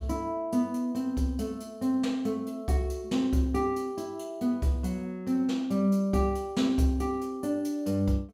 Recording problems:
none

